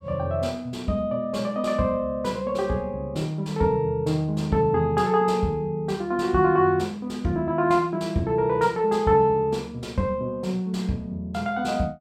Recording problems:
none

